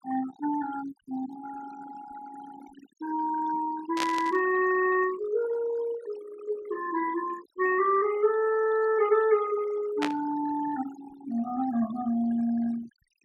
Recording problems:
noise reduction artefacts; signal-to-artefact ratio 15 dB
static burst; at 4 s and at 10 s; peak +1 dB vs average level

